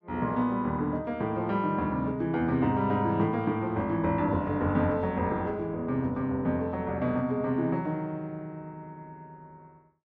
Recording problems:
none

